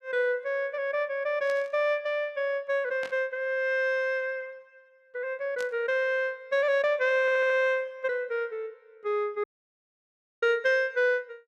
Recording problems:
static burst; 4 times, first at 1.5 s; peak -10 dB vs average level
stutter; at 7 s
audio cutting out; at 9.5 s for 1 s

